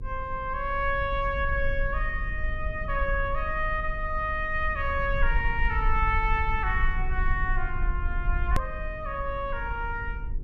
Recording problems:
hum; 50 Hz, harmonics up to 500 Hz, SNR 18 dB
rumble; below 54 Hz, strongest tone 24 Hz, SNR 4 dB
edit click; at 8.5 s

